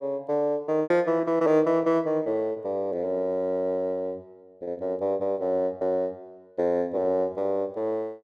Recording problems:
packet loss; 5% of the sound replaced, filled with repeated pitch periods

